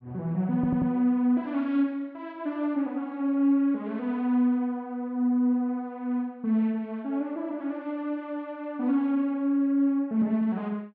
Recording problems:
stutter; at 0.5 s

